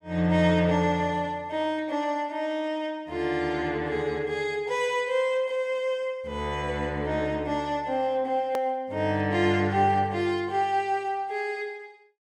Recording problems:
edit click; at 8.5 s

